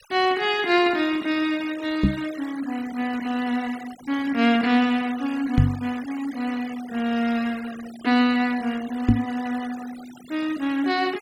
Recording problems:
noise reduction artefacts; signal-to-artefact ratio 18 dB
microphone bump; at 2 s, at 5.5 s and at 9 s; peak +10 dB vs average level

